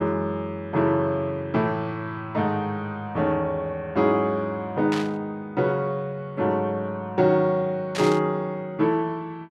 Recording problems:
static burst; at 5 s and at 8 s; peak -3 dB vs average level

